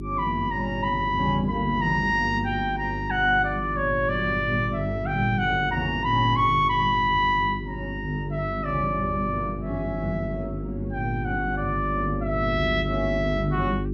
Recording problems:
electrical hum; 50 Hz, harmonics up to 400 Hz, SNR 7 dB

